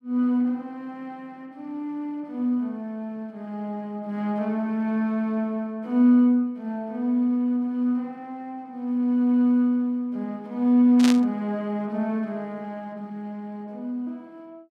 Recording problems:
static burst; at 11 s; peak 0 dB vs average level

